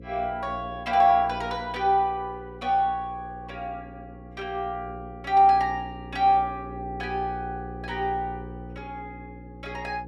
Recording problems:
hum; 60 Hz, harmonics up to 540 Hz, SNR 16 dB

